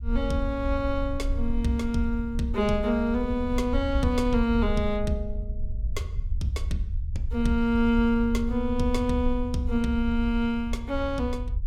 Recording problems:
rumble; below 68 Hz, SNR 6 dB

